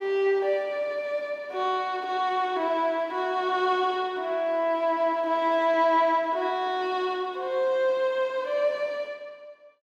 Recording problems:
none

